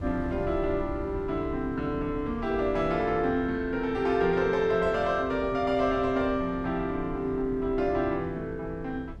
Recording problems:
wind on the microphone; below 140 Hz, SNR 14 dB

